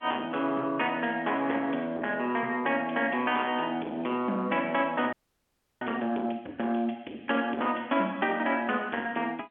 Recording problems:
telephone audio; 220 Hz to 3.4 kHz, G.711
distortion; soft clipping, signal-to-distortion ratio 13 dB
audio freezing; at 5 s for 0.5 s

